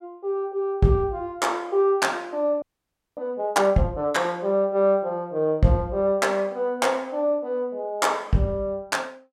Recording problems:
frozen audio; at 2.5 s for 0.5 s

